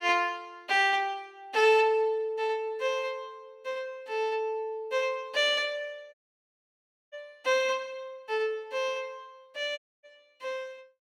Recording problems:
audio cutting out; at 6 s for 1 s and at 10 s

